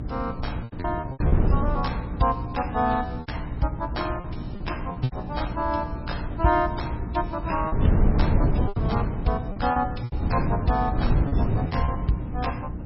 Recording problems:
lossy compression; MP3, log-spectral distance 2 dB, nothing above 5.5 kHz
mains hum; 60 Hz, harmonics up to 300 Hz, SNR 8 dB
wind on the microphone; below 170 Hz, SNR 0 dB
packet loss; 8% of the sound replaced, filled with repeated pitch periods

